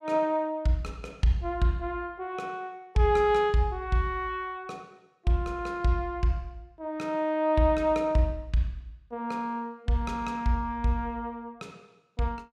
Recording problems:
none

